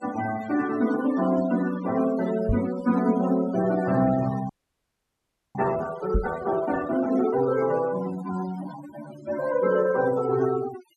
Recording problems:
denoising artefacts; signal-to-artefact ratio 13 dB
microphone bump; at 2.5 s and at 6 s; peak +4 dB vs average level
frozen audio; at 4.5 s for 1 s

